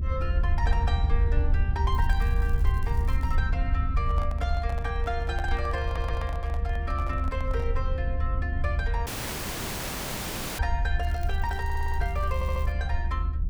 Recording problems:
low-frequency rumble; below 74 Hz, SNR -5 dB
crackling; from 2 to 3.5 s and from 11 to 13 s; loose cable, SNR 19 dB
handling noise; from 4 to 8 s; peak -1 dB vs average level
audio stuttering; at 6 s and at 12 s
audio cutting out; at 9 s for 1.5 s

